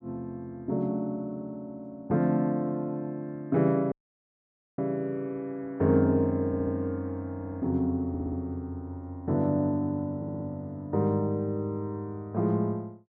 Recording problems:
dropout; at 4 s for 1 s
stutter; 4 times, first at 6.5 s

